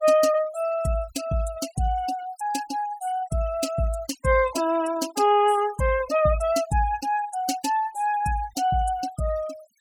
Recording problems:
denoising artefacts; signal-to-artefact ratio 15 dB

